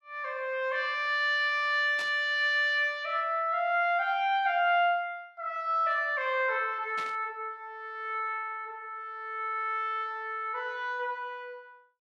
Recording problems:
burst of static; at 2 s and at 7 s; peak -8 dB vs average level

